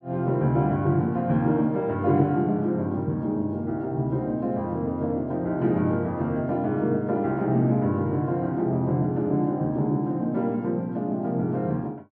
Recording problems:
none

